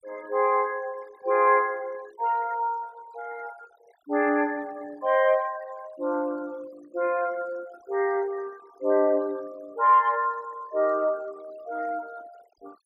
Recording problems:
noise reduction artefacts; signal-to-artefact ratio 24 dB

